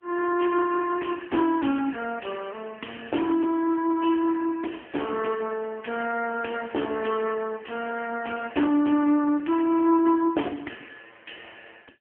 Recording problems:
telephone audio; 240 Hz to 3.2 kHz, AMR-NB

